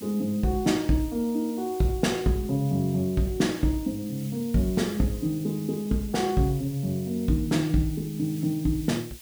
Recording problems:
background hiss; SNR 18 dB

